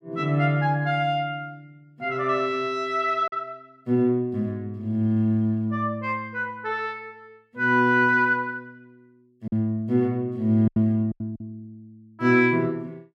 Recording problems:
packet loss; 3% of the sound replaced, filled with silence

